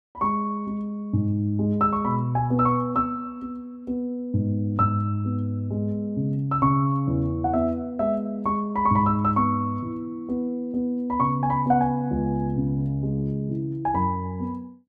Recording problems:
none

